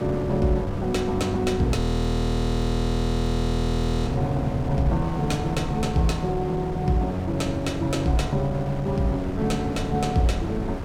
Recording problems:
wind on the microphone; below 360 Hz, SNR 7 dB
audio freezing; at 2 s for 2.5 s

